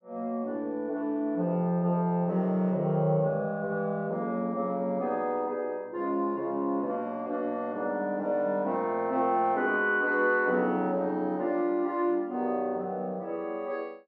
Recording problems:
none

